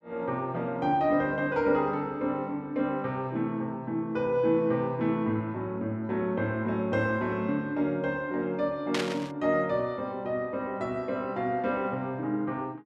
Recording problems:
burst of static; at 9 s; peak +2 dB vs average level

